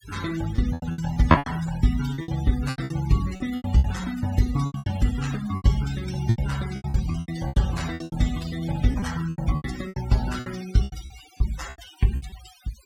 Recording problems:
denoising artefacts; signal-to-artefact ratio 15 dB
packet loss; 17% of the sound replaced, filled with repeated pitch periods

